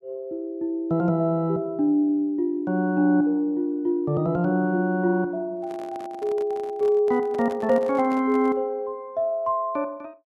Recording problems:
microphone handling noise; from 5.5 to 8.5 s; peak -11 dB vs average level

